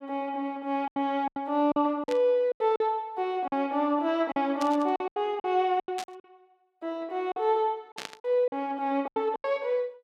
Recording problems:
packet loss; 11% of the sound replaced, filled with silence
static burst; 4 times, first at 2 s; peak -4 dB vs average level

